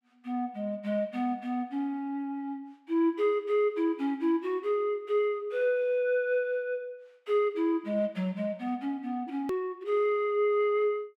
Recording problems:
hard cut with a click; at 9.5 s

